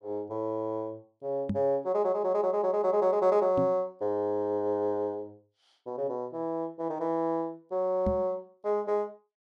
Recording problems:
microphone thump; at 1.5 s, at 3.5 s and at 8 s; peak +2 dB vs average level

